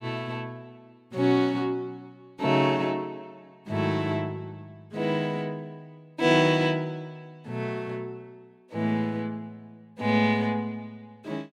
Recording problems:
none

